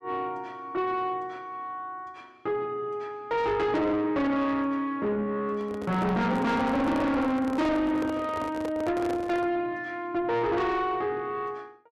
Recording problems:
distorted audio; soft clipping, signal-to-distortion ratio 7 dB
handling noise; from 5.5 to 9.5 s; peak -2 dB vs average level

